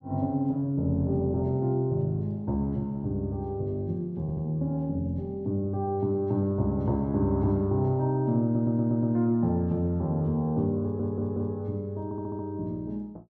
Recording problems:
stutter; 4 times, first at 4 s

